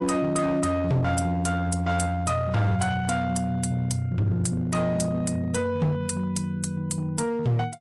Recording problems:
codec artefacts; MP3, log-spectral distance 2 dB, nothing above 11 kHz
distorted audio; hard clipping, uneven, signal-to-distortion ratio 10 dB

